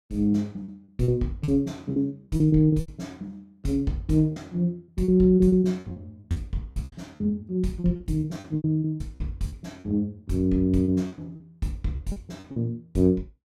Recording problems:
lost packets; 13% of the sound replaced, filled with repeated pitch periods

